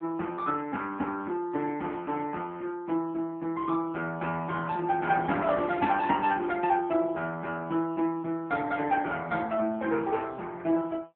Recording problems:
telephone audio; 220 Hz to 3.5 kHz, AMR-NB

